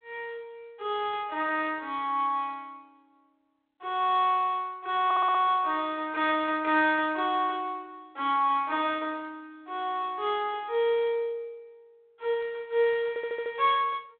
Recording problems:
phone line; 300 Hz to 3.7 kHz, G.726
stutter; at 5 s and at 13 s

